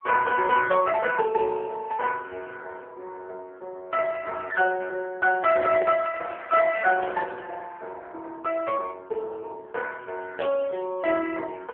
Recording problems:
telephone audio; 300 Hz to 3 kHz, AMR-NB
microphone handling noise; from 5.5 to 7.5 s; peak -9 dB vs average level

